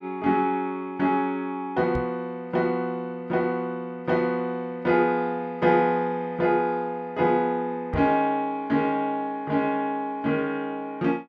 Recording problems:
microphone bump; at 2 s and at 8 s; peak -2 dB vs average level

